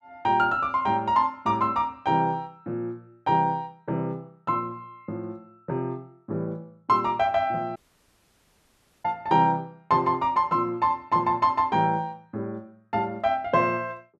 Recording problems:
dropout; at 8 s for 1.5 s

